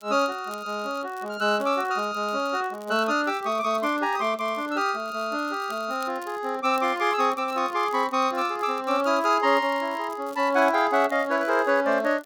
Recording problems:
crackle; vinyl, SNR 26 dB

